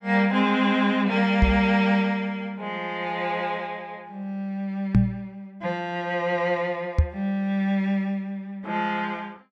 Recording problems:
microphone thump; at 1.5 s, at 5 s and at 7 s; peak +9 dB vs average level

